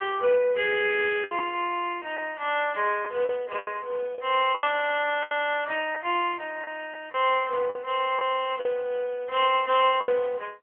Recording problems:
telephone audio; 320 Hz to 3.3 kHz, AMR-NB
packet loss; 6% of the sound replaced, filled with the last packet

